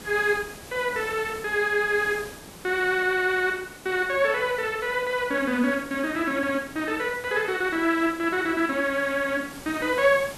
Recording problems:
hiss; slope -4 dB per octave, SNR 18 dB

